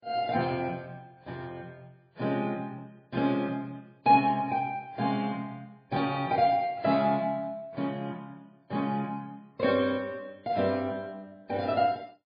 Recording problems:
lossy codec; AAC, then MP3, log-spectral distance 2 dB, nothing above 4.2 kHz

